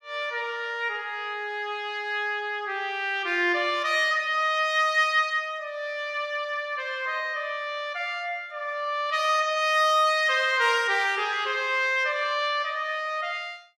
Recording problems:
none

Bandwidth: 15.5 kHz